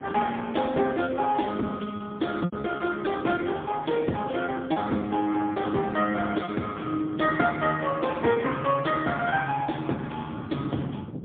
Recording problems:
phone line; 150 Hz to 3.5 kHz, AMR-NB, then MP3
wind noise; below 320 Hz, SNR 14 dB
packet loss; 4% of the sound replaced, filled with repeated pitch periods

